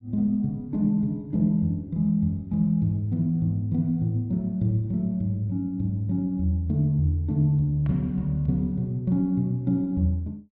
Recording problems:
none

